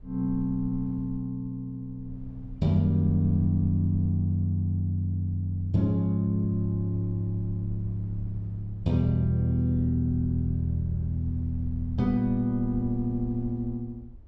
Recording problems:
low-frequency rumble; below 70 Hz, SNR 17 dB

